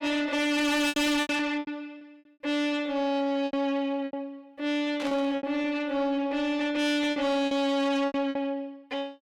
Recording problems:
distorted audio; soft clipping, signal-to-distortion ratio 7 dB
packet loss; 10% of the sound replaced, filled with repeated pitch periods
burst of static; at 5 s; peak -6 dB vs average level

